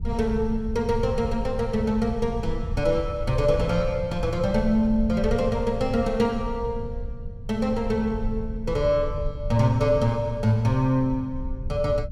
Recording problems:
rumble; below 84 Hz, SNR 9 dB

